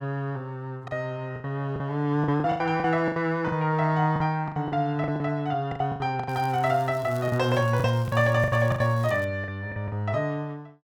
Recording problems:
lost packets; 13% of the sound replaced, filled with the last packet
crackling; from 6.5 to 9.5 s; loose cable, SNR 24 dB

